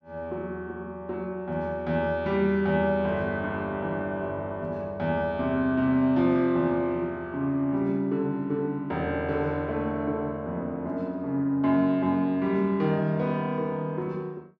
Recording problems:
none

